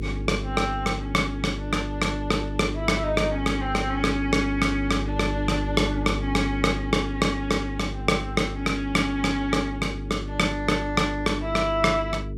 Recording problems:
hum; 50 Hz, harmonics up to 450 Hz, SNR 7 dB

